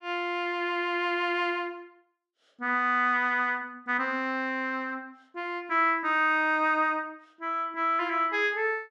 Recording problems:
none

